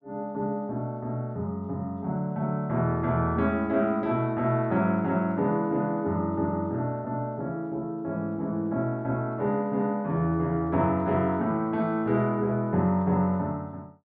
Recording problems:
none

